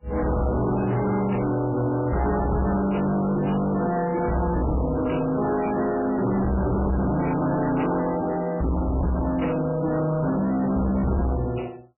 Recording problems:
lossy codec; MP3, log-spectral distance 4 dB, nothing above 2.9 kHz
distorted audio; soft clipping, signal-to-distortion ratio 6 dB

